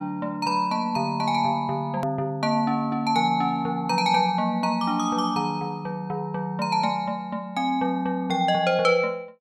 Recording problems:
edit click; at 2 s

